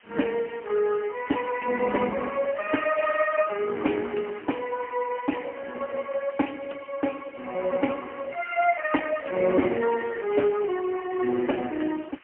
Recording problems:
telephone audio; 220 Hz to 3.1 kHz, AMR-NB, then MP3
hiss; SNR 27 dB

